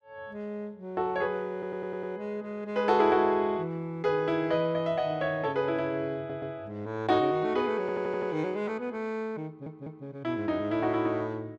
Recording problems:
audio stuttering; 4 times, first at 1.5 s

